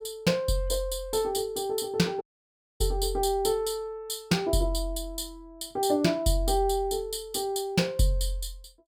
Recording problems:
audio cutting out; at 2 s for 0.5 s

